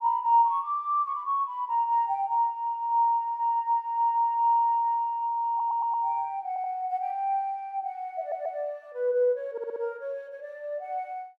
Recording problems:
stutter; 4 times, first at 5.5 s

